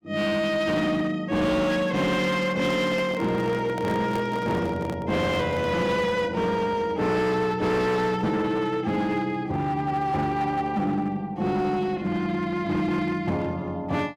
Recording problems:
distorted audio; hard clipping, signal-to-distortion ratio 10 dB
microphone handling noise; from 2.5 to 6 s; peak -5 dB vs average level

